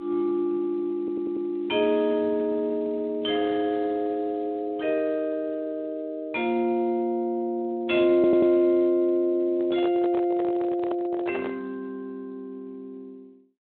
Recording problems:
telephone audio; 240 Hz to 3.9 kHz, Speex
stutter; at 1 s and at 8 s
microphone handling noise; from 9.5 to 12 s; peak -4 dB vs average level

